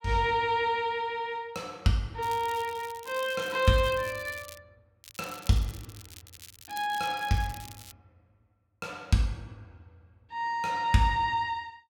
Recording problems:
crackle; from 2 to 4.5 s and from 5 to 8 s; loose cable, SNR 18 dB

